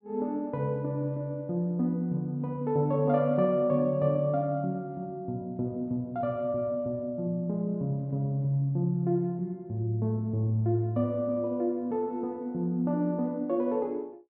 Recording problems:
low-pass filter; nothing above 5.5 kHz

